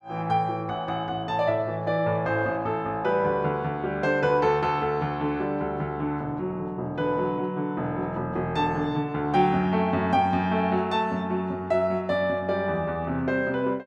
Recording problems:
none

